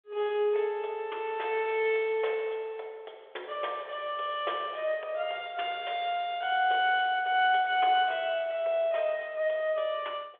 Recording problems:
phone line; 340 Hz to 3.5 kHz, G.726

